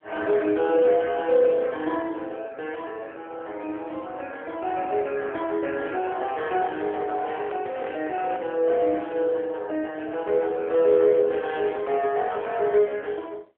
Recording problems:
phone line; 300 Hz to 3.3 kHz, AMR-NB
microphone handling noise; from 6 to 8.5 s; peak -8 dB vs average level

